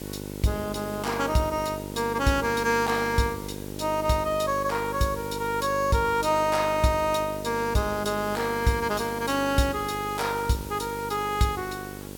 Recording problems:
hum; 50 Hz, harmonics up to 1.5 kHz, SNR 11 dB
hiss; SNR 17 dB

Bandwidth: 17 kHz